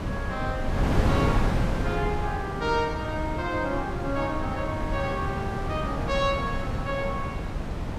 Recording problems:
wind noise; below 340 Hz, SNR -1 dB

